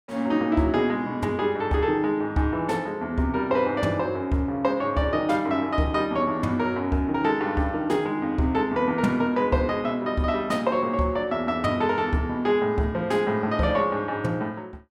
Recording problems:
none

